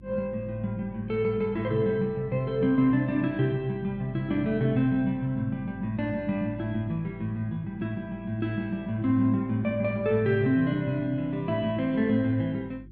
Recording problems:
hum; 50 Hz, harmonics up to 350 Hz, SNR 21 dB

